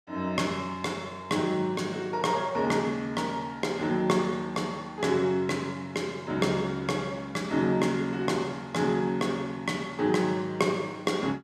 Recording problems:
none

